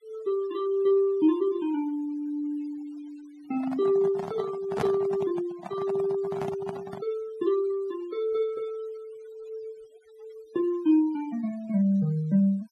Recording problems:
noise reduction artefacts; signal-to-artefact ratio 23 dB
microphone handling noise; from 3.5 to 7 s; peak +1 dB vs average level

